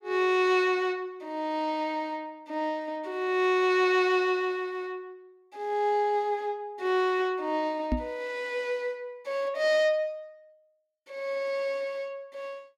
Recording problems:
knock on the microphone; at 8 s; peak +3 dB vs average level

